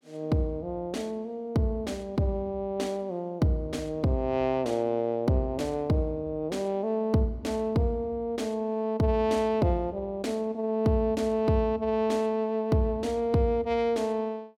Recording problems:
none

